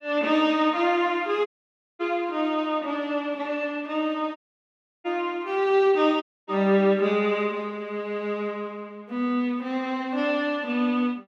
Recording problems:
dropout; at 1.5 s for 0.5 s, at 4.5 s for 0.5 s and at 6 s

